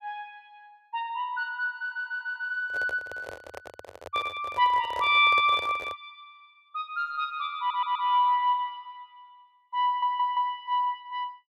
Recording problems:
stutter; at 2 s, at 7.5 s and at 10 s
handling noise; from 2.5 to 6 s; peak -8 dB vs average level

